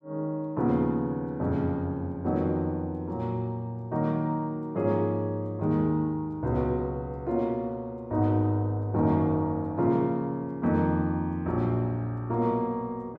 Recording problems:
none

